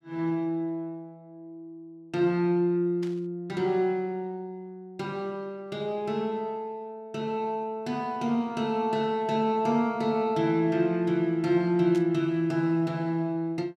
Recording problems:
burst of static; at 3 s and at 12 s; peak -12 dB vs average level

